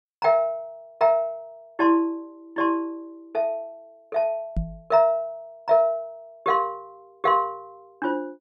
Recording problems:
microphone bump; at 4.5 s; peak 0 dB vs average level

